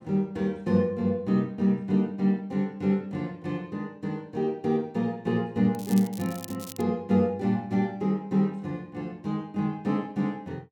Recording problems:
crackle; from 6 to 7 s; loose cable, SNR 15 dB

